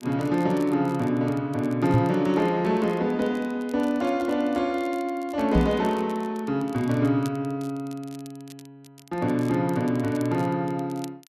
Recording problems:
crackling; vinyl, SNR 26 dB
microphone thump; at 2 s and at 5.5 s; peak +6 dB vs average level

